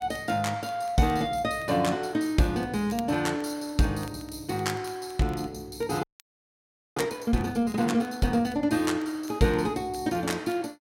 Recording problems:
crackle; vinyl, SNR 27 dB
frozen audio; at 6 s for 1 s

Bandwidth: 16 kHz